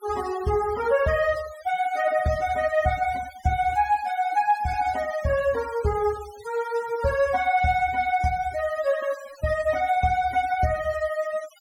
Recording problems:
denoising artefacts; signal-to-artefact ratio 19 dB

